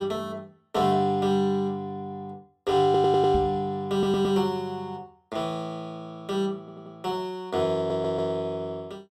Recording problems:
stutter; 4 times, first at 3 s
knock on the microphone; at 3.5 s; peak -1 dB vs average level

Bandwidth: 16 kHz